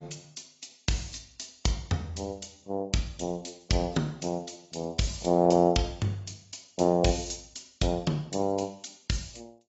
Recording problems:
low-pass filter; nothing above 7.6 kHz
lossy codec; AAC, log-spectral distance 6 dB

